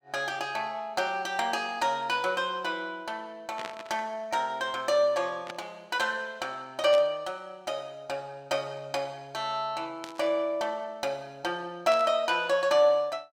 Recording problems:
static burst; 5 times, first at 3.5 s; peak -5 dB vs average level

